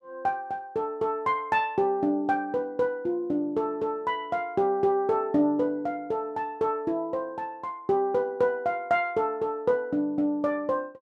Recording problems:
none

